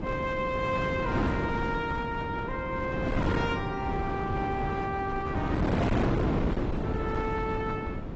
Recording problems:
lossy compression; AAC, log-spectral distance 2 dB, nothing above 7.3 kHz
distortion; hard clipping, uneven, signal-to-distortion ratio 6 dB
wind on the microphone; below 450 Hz, SNR -1 dB

